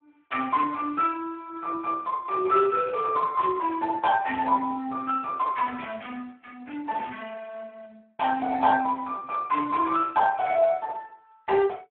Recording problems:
phone line; 300 Hz to 3.2 kHz, Speex

